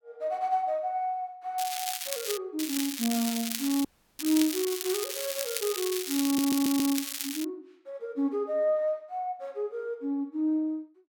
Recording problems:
crackling; at 1.5 s and from 2.5 to 7.5 s; loose cable, SNR 3 dB
audio cutting out; at 4 s
stutter; at 6.5 s

